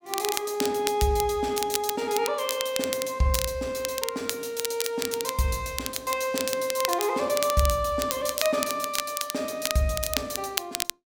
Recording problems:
crackling; vinyl, SNR 4 dB

